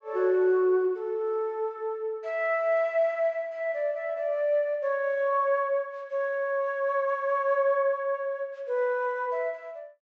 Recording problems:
treble cut off; nothing above 8 kHz

